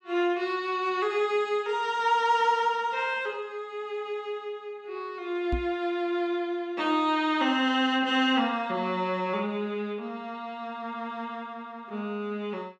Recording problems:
knock on the microphone; at 5.5 s; peak +1 dB vs average level

